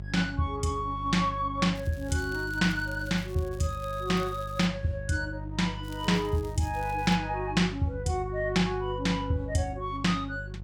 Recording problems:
electrical hum; 50 Hz, harmonics up to 550 Hz, SNR 10 dB
crackling; from 2 to 4.5 s and from 6 to 7 s; loose cable, SNR 23 dB

